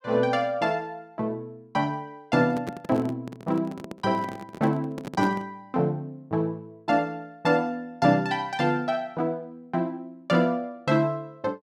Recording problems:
microphone handling noise; from 2.5 to 5.5 s; peak -1 dB vs average level

